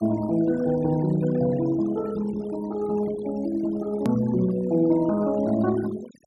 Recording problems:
denoising artefacts; signal-to-artefact ratio 18 dB
hard cut with a click; at 4 s

